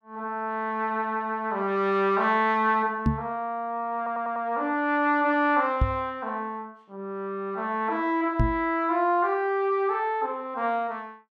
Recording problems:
microphone thump; at 3 s, at 6 s and at 8.5 s; peak +6 dB vs average level
audio stuttering; at 4 s

